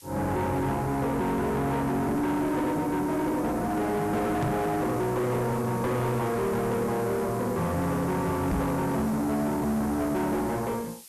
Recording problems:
distorted audio; soft clipping, signal-to-distortion ratio 7 dB
background hiss; slope +3 dB per octave, SNR 19 dB
knock on the microphone; at 4.5 s and at 8.5 s; peak +4 dB vs average level

